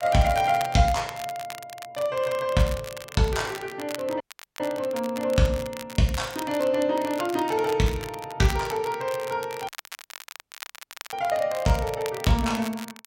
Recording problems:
crackling; vinyl, SNR 14 dB
dropout; at 4 s and at 9.5 s for 1.5 s

